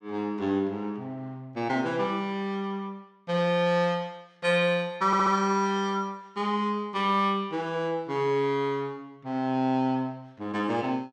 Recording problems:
stutter; at 5 s

